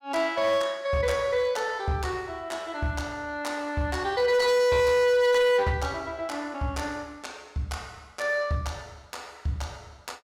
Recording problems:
distorted audio; hard clipping, signal-to-distortion ratio 11 dB

